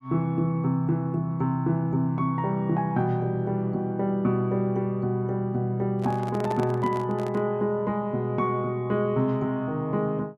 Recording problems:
microphone handling noise; from 6 to 7.5 s; peak -5 dB vs average level

